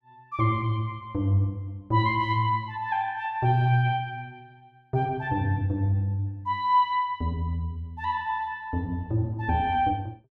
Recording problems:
none

